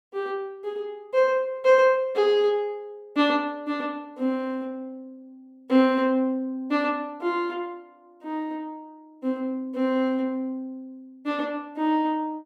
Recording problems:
none

